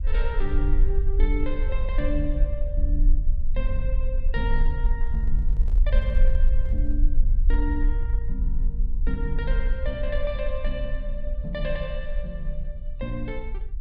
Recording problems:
low-frequency rumble; below 44 Hz, strongest tone 22 Hz, SNR -7 dB
microphone handling noise; from 5 to 7 s; peak -10 dB vs average level

